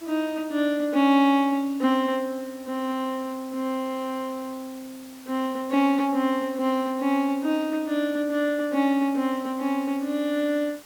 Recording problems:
background hiss; slope -2 dB per octave, SNR 22 dB

